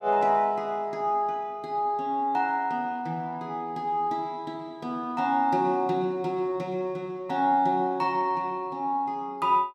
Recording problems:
none

